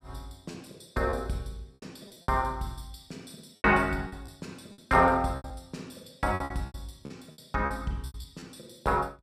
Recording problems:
packet loss; 11% of the sound replaced, filled with repeated pitch periods

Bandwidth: 15 kHz